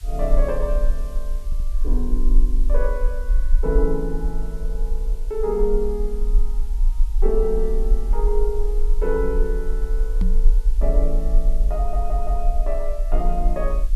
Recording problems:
hiss; slope +2 dB per octave, SNR 24 dB
low-frequency rumble; below 38 Hz, strongest tone 22 Hz, SNR -3 dB
audio stuttering; at 1.5 s and at 12 s
knock on the microphone; at 10 s; peak +5 dB vs average level

